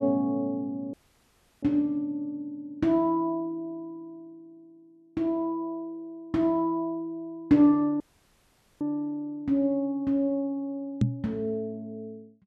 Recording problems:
dropout; at 1 s for 0.5 s and at 8 s for 1 s
knock on the microphone; at 11 s; peak +7 dB vs average level

